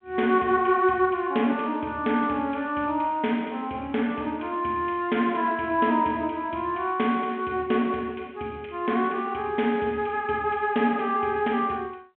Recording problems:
telephone audio; 190 Hz to 3.3 kHz, G.726

